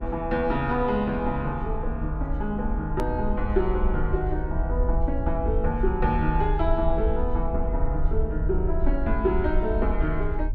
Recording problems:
electrical hum; 50 Hz, harmonics up to 1.1 kHz, SNR 21 dB
low-frequency rumble; below 60 Hz, SNR 2 dB
hard cut with a click; at 3 s

